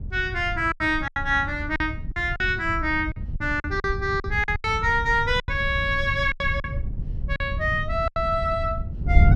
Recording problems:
wind on the microphone; below 110 Hz, SNR 7 dB
lost packets; 11% of the sound replaced, filled with silence

